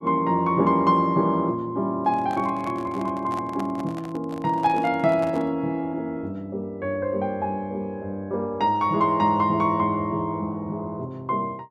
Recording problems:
microphone handling noise; from 2 to 5.5 s; peak -8 dB vs average level

